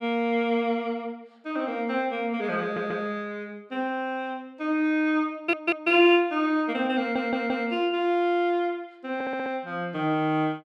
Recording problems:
audio stuttering; 4 times, first at 2.5 s

